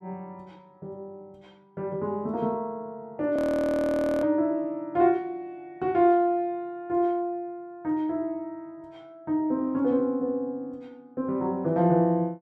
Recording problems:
audio freezing; at 3.5 s for 1 s

